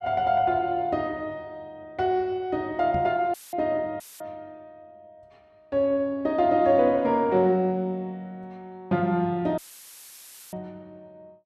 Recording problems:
knock on the microphone; at 3 s; peak -4 dB vs average level
audio cutting out; at 3.5 s, at 4 s and at 9.5 s for 1 s; filled with static

